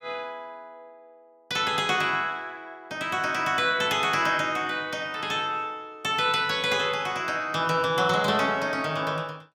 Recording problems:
none

